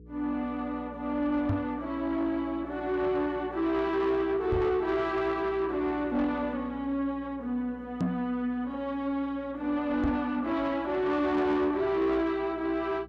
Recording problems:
distorted audio; soft clipping, signal-to-distortion ratio 11 dB
electrical hum; 60 Hz, harmonics up to 480 Hz, SNR 21 dB
microphone bump; 4 times, first at 1.5 s; peak +4 dB vs average level

